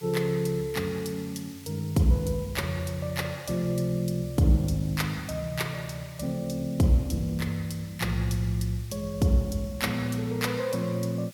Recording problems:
hiss; slope +1 dB per octave, SNR 21 dB

